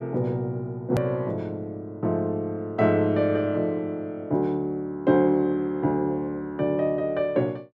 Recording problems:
hard cut with a click; at 1 s

